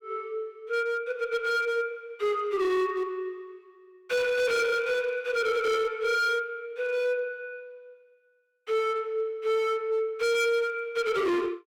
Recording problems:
distortion; hard clipping, uneven, signal-to-distortion ratio 7 dB

